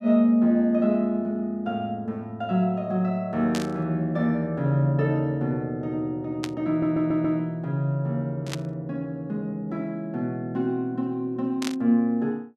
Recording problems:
burst of static; 4 times, first at 3.5 s; peak -3 dB vs average level
stutter; at 6.5 s

